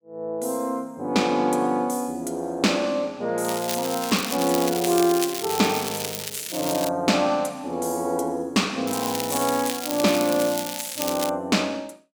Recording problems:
crackle; from 3.5 to 7 s and from 9 to 11 s; loose cable, SNR 6 dB

